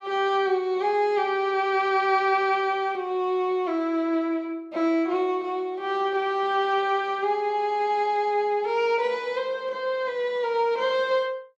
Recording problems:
none

